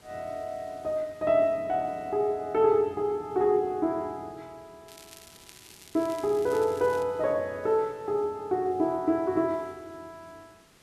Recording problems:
hiss; slope -3 dB per octave, SNR 29 dB
crackle; from 5 to 7 s; loose cable, SNR 21 dB

